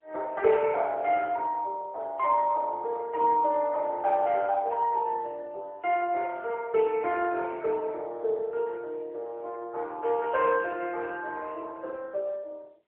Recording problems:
telephone audio; 370 Hz to 2.6 kHz, AMR-NB

